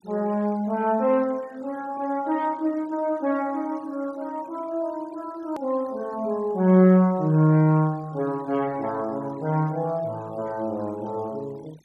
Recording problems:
denoising artefacts; signal-to-artefact ratio 27 dB
hard cut with a click; at 5.5 s

